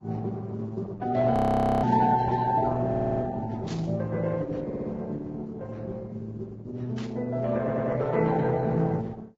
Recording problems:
lossy codec; Opus, then Vorbis, log-spectral distance 3 dB, nothing above 13.1 kHz
frozen audio; at 1.5 s for 0.5 s
burst of static; at 2 s, at 3.5 s and at 7 s; peak -11 dB vs average level
audio stuttering; at 3 s, at 4.5 s and at 7.5 s

